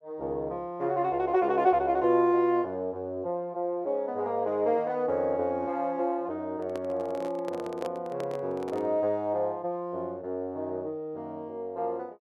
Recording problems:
handling noise; from 6.5 to 9 s; peak -4 dB vs average level

